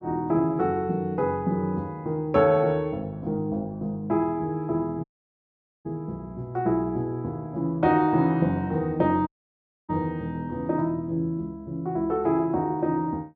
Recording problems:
audio cutting out; at 5 s for 1 s and at 9.5 s for 0.5 s

